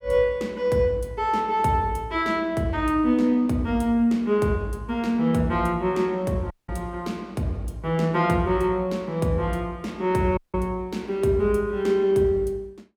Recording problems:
dropout; at 6.5 s and at 10 s

